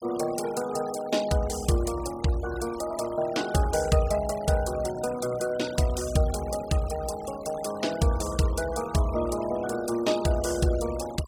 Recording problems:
noise reduction artefacts; signal-to-artefact ratio 15 dB

